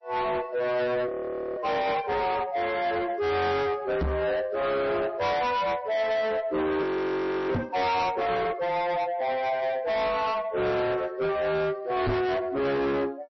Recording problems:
codec artefacts; MP3, log-spectral distance 2 dB, nothing above 5.8 kHz
distorted audio; soft clipping, signal-to-distortion ratio 6 dB
audio freezing; at 1 s and at 7 s for 0.5 s
microphone bump; at 4 s, at 7.5 s and at 12 s; peak +5 dB vs average level

